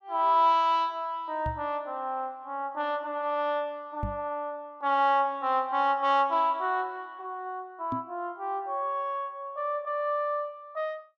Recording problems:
microphone thump; at 1.5 s, at 4 s and at 8 s; peak -1 dB vs average level

